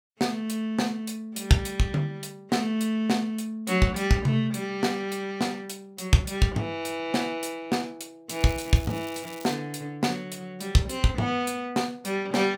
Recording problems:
crackling; from 8.5 to 9.5 s; loose cable, SNR 18 dB

